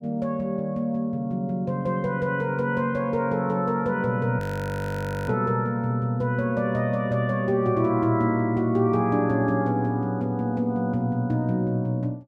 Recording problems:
frozen audio; at 4.5 s for 1 s

